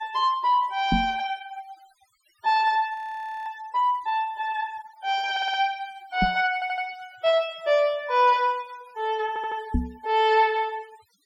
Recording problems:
denoising artefacts; signal-to-artefact ratio 23 dB
knock on the microphone; at 1 s, at 6 s and at 9.5 s; peak +4 dB vs average level
audio freezing; at 3 s for 0.5 s
audio stuttering; at 5.5 s, at 6.5 s and at 9.5 s

